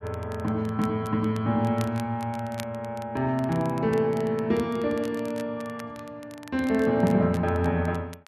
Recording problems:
crackling; vinyl, SNR 22 dB

